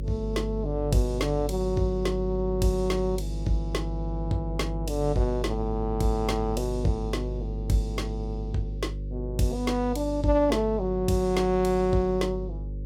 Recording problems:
electrical hum; 50 Hz, harmonics up to 550 Hz, SNR 6 dB

